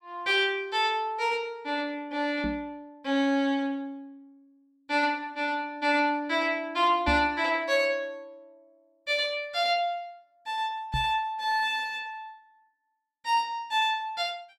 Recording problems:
microphone bump; at 2.5 s, at 7 s and at 11 s; peak -1 dB vs average level

